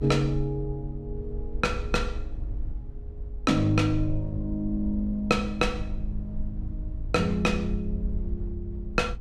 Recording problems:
low-frequency rumble; below 56 Hz, SNR 8 dB

